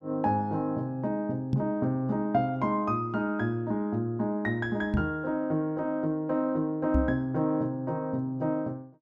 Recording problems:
microphone bump; at 1.5 s, at 5 s and at 7 s; peak +5 dB vs average level

